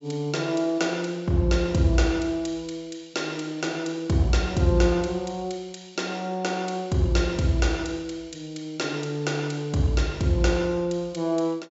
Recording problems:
low-pass filter; nothing above 8 kHz

